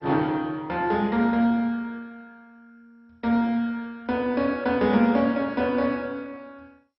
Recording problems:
lossy compression; MP2, log-spectral distance 2 dB, nothing above 5 kHz

